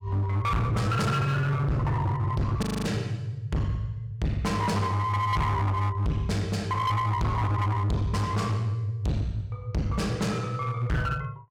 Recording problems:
distortion; hard clipping, uneven, signal-to-distortion ratio 5 dB
frozen audio; at 2.5 s

